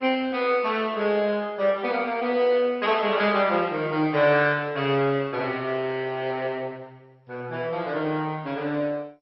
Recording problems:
lossy compression; MP2, log-spectral distance 3 dB, nothing above 5.5 kHz

